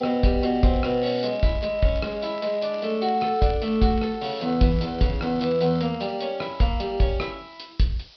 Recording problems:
treble cut off; nothing above 5.5 kHz
background hiss; SNR 27 dB
crackling; from 0.5 to 6 s; loose cable, SNR 23 dB

